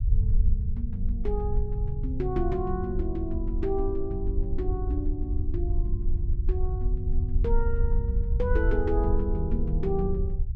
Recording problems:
rumble; below 70 Hz, SNR -3 dB

